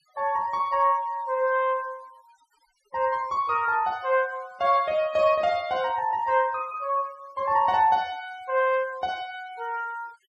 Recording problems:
noise reduction artefacts; signal-to-artefact ratio 25 dB

